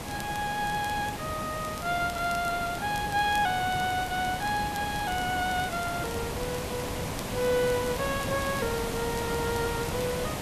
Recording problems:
hiss; slope -4 dB per octave, SNR 4 dB
crackling; vinyl, SNR 20 dB

